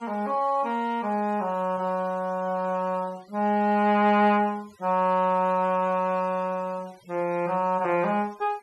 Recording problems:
noise reduction artefacts; signal-to-artefact ratio 27 dB

